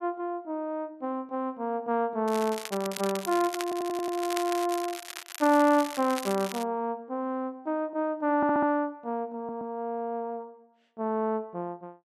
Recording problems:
crackle; from 2.5 to 6.5 s; loose cable, SNR 10 dB
stutter; at 3.5 s, at 8.5 s and at 9.5 s

